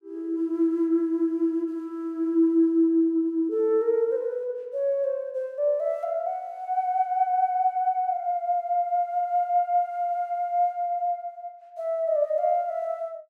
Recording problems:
none

